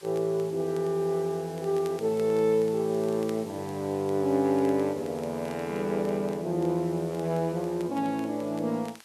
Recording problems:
hiss; slope +1 dB per octave, SNR 22 dB
crackling; vinyl, SNR 27 dB

